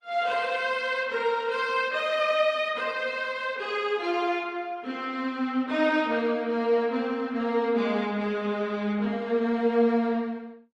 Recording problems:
lossy compression; Opus, log-spectral distance 2 dB

